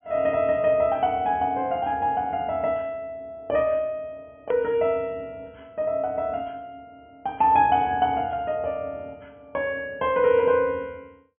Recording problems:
low-pass filter; nothing above 3.3 kHz
hard cut with a click; at 4.5 s

